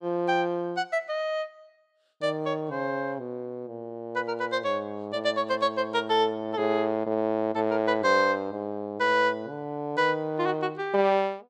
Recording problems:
none

